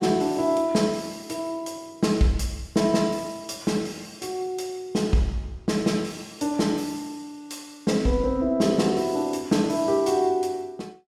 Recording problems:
none

